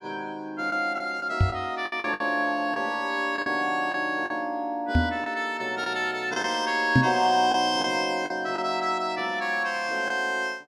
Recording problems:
packet loss; 5% of the sound replaced, filled with the last packet
knock on the microphone; at 1.5 s, at 5 s and at 7 s; peak +9 dB vs average level

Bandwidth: 12.5 kHz